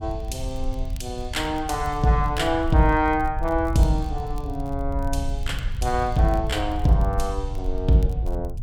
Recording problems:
rumble; below 72 Hz, SNR 7 dB
crackle; vinyl, SNR 29 dB

